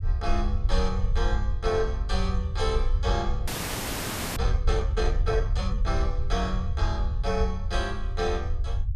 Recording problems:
low-frequency rumble; below 72 Hz, SNR -2 dB
audio freezing; at 3.5 s for 1 s

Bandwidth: 14.5 kHz